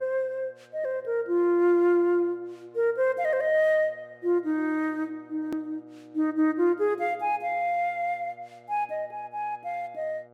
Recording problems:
hum; 60 Hz, harmonics up to 1.6 kHz, SNR 28 dB
edit click; at 5.5 s

